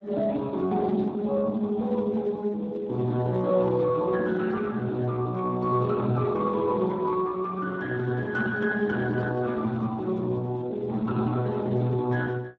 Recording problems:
lossy compression; Speex, log-spectral distance 3 dB

